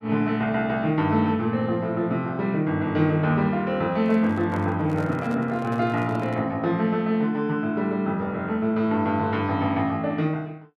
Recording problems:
handling noise; from 4 to 6.5 s; peak -10 dB vs average level

